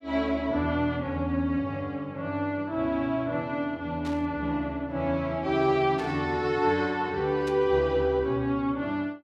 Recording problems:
burst of static; at 4 s, at 6 s and at 7.5 s; peak -11 dB vs average level

